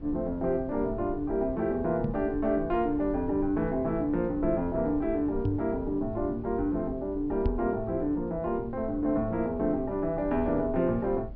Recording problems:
treble cut off; nothing above 5.5 kHz
rumble; below 88 Hz, SNR 15 dB
knock on the microphone; at 2 s, at 5.5 s and at 7.5 s; peak +3 dB vs average level

